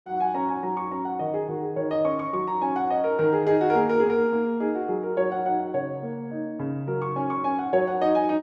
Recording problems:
none

